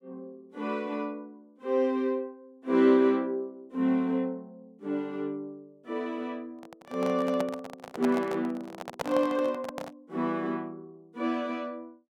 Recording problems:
microphone handling noise; from 6.5 to 10 s; peak +1 dB vs average level

